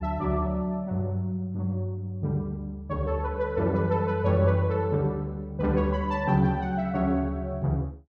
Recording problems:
none

